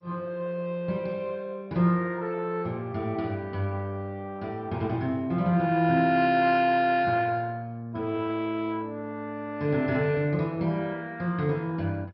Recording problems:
lossy compression; MP2, log-spectral distance 2 dB, nothing above 4.5 kHz

